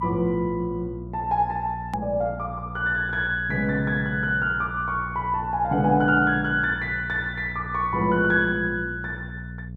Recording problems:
hum; 60 Hz, harmonics up to 480 Hz, SNR 13 dB
edit click; at 2 s

